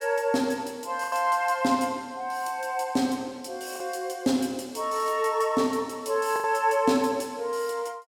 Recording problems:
packet loss; 2% of the sound replaced, filled with the last packet

